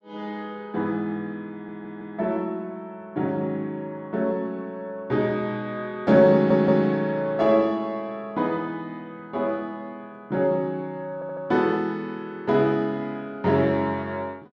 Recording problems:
audio stuttering; at 1.5 s, at 6.5 s and at 11 s

